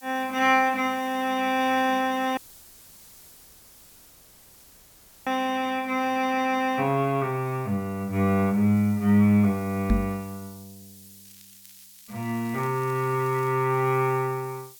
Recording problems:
hiss; SNR 23 dB
audio cutting out; at 2.5 s for 3 s
microphone thump; at 10 s; peak +4 dB vs average level
crackle; from 11 to 14 s; loose cable, SNR 28 dB

